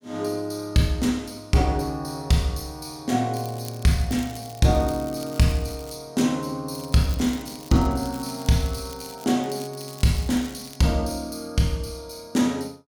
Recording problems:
crackle; from 3.5 to 6 s, from 7 to 9 s and from 9.5 to 11 s; loose cable, SNR 19 dB

